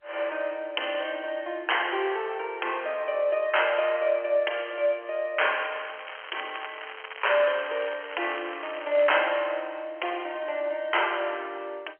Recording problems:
phone line; 300 Hz to 3.2 kHz, G.711
crackling; from 5.5 to 9.5 s; loose cable, SNR 12 dB

